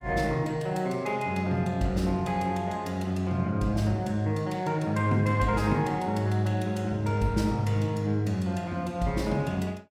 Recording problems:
none

